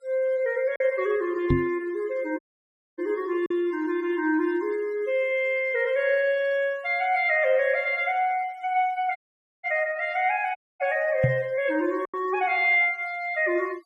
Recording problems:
denoising artefacts; signal-to-artefact ratio 26 dB
packet loss; 1.3% of the sound replaced, filled with silence
knock on the microphone; at 1.5 s and at 11 s; peak +5 dB vs average level
audio cutting out; at 2.5 s for 0.5 s, at 9 s and at 11 s

